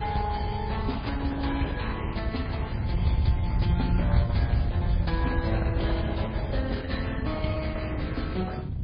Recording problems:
lossy codec; Opus, then MP3, log-spectral distance 3 dB, nothing above 4.6 kHz
wind noise; below 110 Hz, SNR -3 dB

